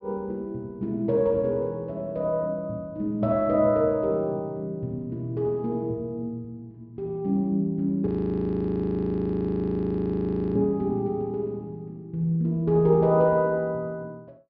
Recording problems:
treble missing; nothing above 5.5 kHz
frozen audio; at 8 s for 2.5 s

